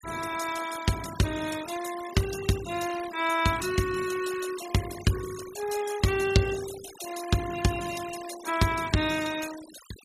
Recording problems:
denoising artefacts; signal-to-artefact ratio 12 dB

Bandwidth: 15 kHz